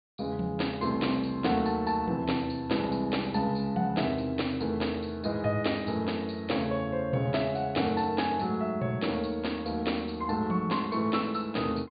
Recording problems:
treble missing; nothing above 4.7 kHz

